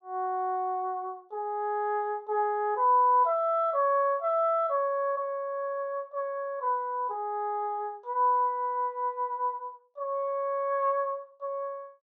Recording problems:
none

